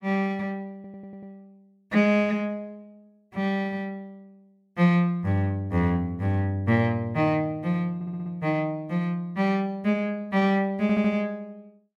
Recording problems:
stutter; at 1 s, at 8 s and at 11 s

